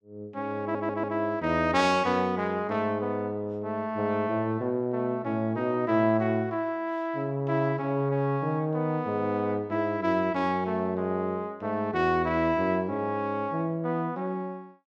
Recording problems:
stutter; at 0.5 s

